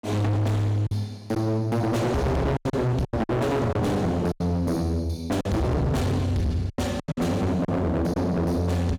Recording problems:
distorted audio; hard clipping, signal-to-distortion ratio 7 dB
packet loss; 8% of the sound replaced, filled with silence

